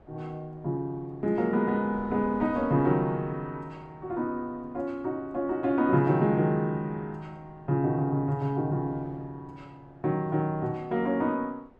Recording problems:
wind on the microphone; below 630 Hz, SNR 24 dB

